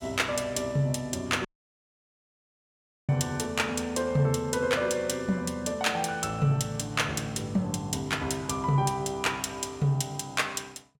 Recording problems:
audio cutting out; at 1.5 s for 1.5 s

